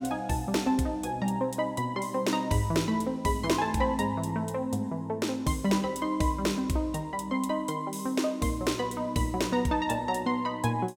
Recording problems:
none

